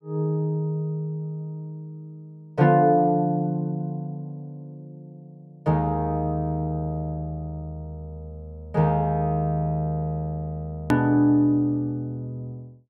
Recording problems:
hard cut with a click; at 11 s

